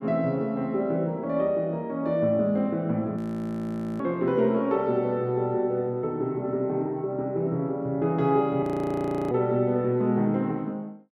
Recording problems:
frozen audio; at 3 s for 1 s and at 8.5 s for 0.5 s

